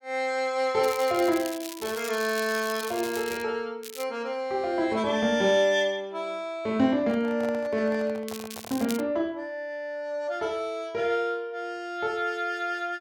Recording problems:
crackling; from 1 to 3.5 s, at 4 s and at 8.5 s; loose cable, SNR 12 dB
microphone handling noise; from 7 to 9 s; peak -9 dB vs average level

